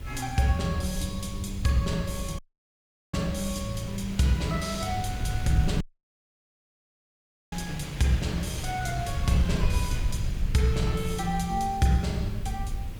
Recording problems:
hum; 50 Hz, harmonics up to 600 Hz, SNR 21 dB
hiss; SNR 27 dB
rumble; below 88 Hz, SNR 7 dB
wind on the microphone; below 2.4 kHz, SNR 15 dB
audio cutting out; at 2.5 s for 0.5 s and at 6 s for 1.5 s

